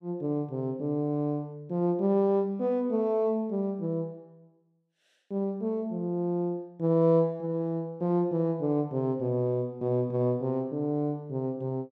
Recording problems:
none

